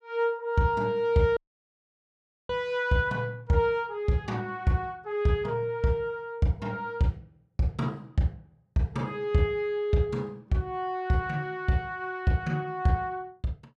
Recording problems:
dropout; at 1.5 s for 1 s

